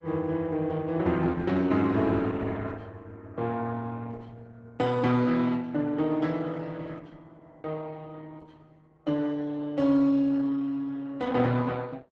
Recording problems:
codec artefacts; Opus, log-spectral distance 3 dB

